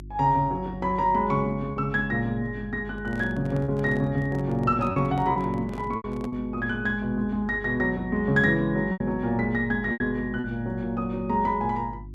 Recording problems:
electrical hum; 50 Hz, harmonics up to 350 Hz, SNR 17 dB
lost packets; 4% of the sound replaced, filled with repeated pitch periods
handling noise; from 3 to 6.5 s; peak -11 dB vs average level

